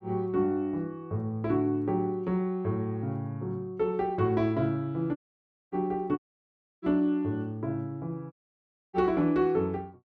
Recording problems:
audio cutting out; at 5 s for 0.5 s, at 6 s for 0.5 s and at 8.5 s for 0.5 s

